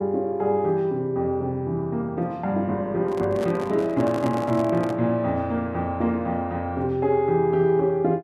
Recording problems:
handling noise; from 3 to 5 s; peak -4 dB vs average level

